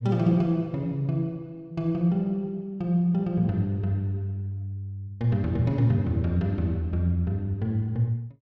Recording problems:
none

